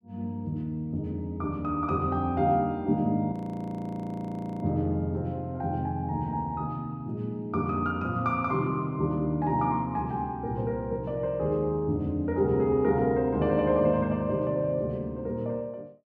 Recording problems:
audio freezing; at 3.5 s for 1.5 s

